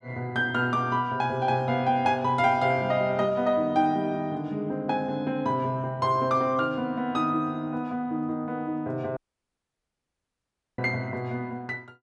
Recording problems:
audio cutting out; at 9 s for 1.5 s

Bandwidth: 10.5 kHz